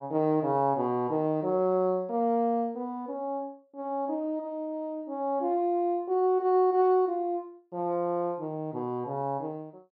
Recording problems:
none

